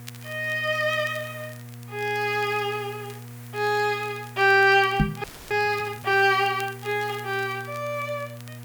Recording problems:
hum; 60 Hz, harmonics up to 1.2 kHz, SNR 18 dB
hiss; SNR 23 dB
crackling; vinyl, SNR 25 dB
knock on the microphone; at 5 s; peak +6 dB vs average level
audio freezing; at 5 s

